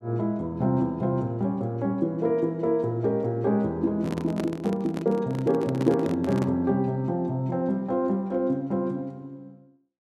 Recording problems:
handling noise; from 4 to 6.5 s; peak -1 dB vs average level

